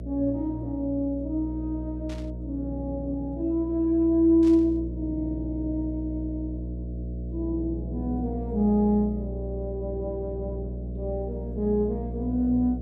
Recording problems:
hum; 60 Hz, harmonics up to 660 Hz, SNR 8 dB
burst of static; at 2 s and at 4.5 s; peak -14 dB vs average level

